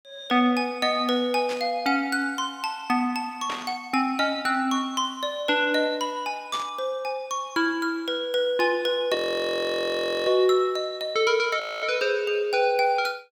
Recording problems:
burst of static; at 1.5 s, at 3.5 s and at 6.5 s; peak -5 dB vs average level
audio freezing; at 9 s for 1 s and at 12 s

